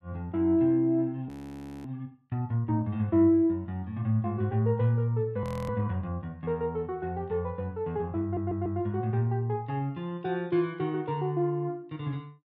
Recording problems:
frozen audio; at 1.5 s for 0.5 s and at 5.5 s
stutter; at 8 s

